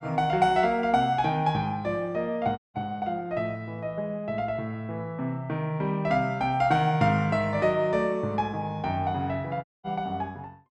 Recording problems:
audio cutting out; at 2.5 s and at 9.5 s

